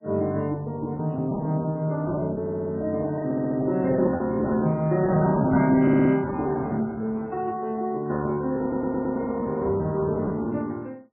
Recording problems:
lossy compression; MP3, log-spectral distance 2 dB
lost packets; 11% of the sound replaced, filled with repeated pitch periods
stutter; 4 times, first at 2.5 s

